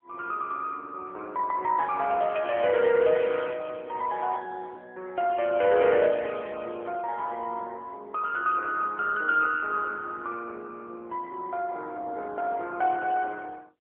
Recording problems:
phone line; 300 Hz to 3 kHz, AMR-NB

